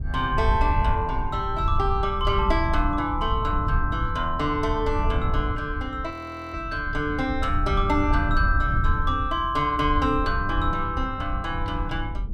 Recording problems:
wind noise; below 84 Hz, SNR 3 dB
audio freezing; at 6 s

